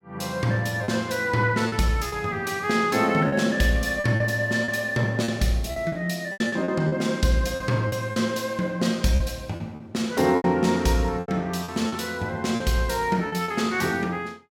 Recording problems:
lost packets; 8% of the sound replaced, filled with repeated pitch periods

